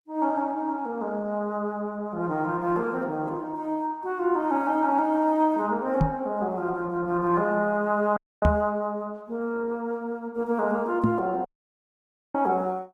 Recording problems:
lossy codec; Opus, log-spectral distance 2 dB
microphone bump; at 6 s, at 8.5 s and at 11 s; peak +7 dB vs average level
dropout; at 8 s and at 11 s for 1 s

